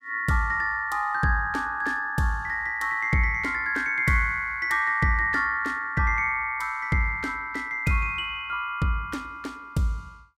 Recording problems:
none

